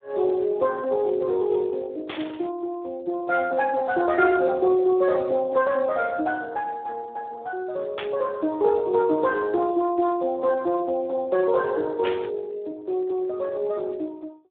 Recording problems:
telephone audio; 280 Hz to 2.8 kHz, Speex
static burst; at 2 s, at 8 s and at 12 s; peak -4 dB vs average level

